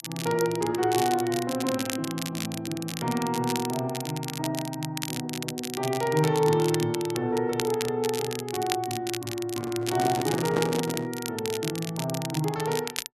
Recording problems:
crackle; vinyl, SNR 7 dB
handling noise; from 9.5 to 11 s; peak +3 dB vs average level

